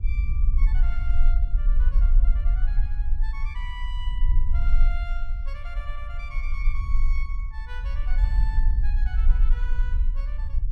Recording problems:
low-frequency rumble; below 44 Hz, strongest tone 20 Hz, SNR -16 dB

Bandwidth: 14 kHz